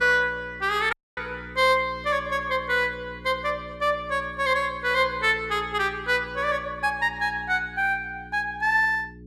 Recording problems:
hum; 60 Hz, harmonics up to 420 Hz, SNR 19 dB
audio cutting out; at 1 s

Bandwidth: 13 kHz